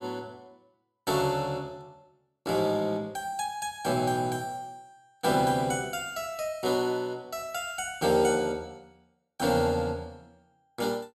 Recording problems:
none

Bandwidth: 14.5 kHz